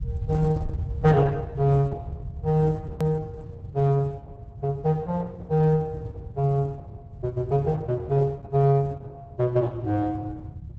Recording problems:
lossy compression; Opus, log-spectral distance 2 dB, nothing above 15.1 kHz
rumble; below 120 Hz, SNR 11 dB
hard cut with a click; at 3 s

